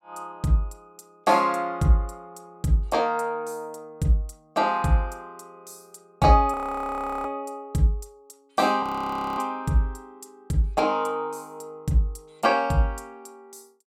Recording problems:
audio freezing; at 6.5 s for 0.5 s and at 9 s for 0.5 s

